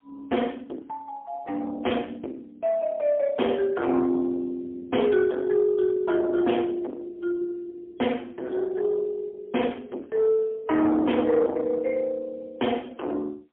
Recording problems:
phone line; 240 Hz to 3.3 kHz, AMR-NB, then MP3
distortion; soft clipping, signal-to-distortion ratio 8 dB

